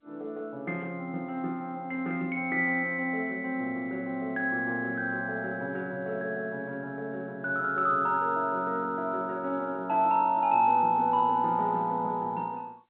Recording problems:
telephone audio; 190 Hz to 3.8 kHz, G.711

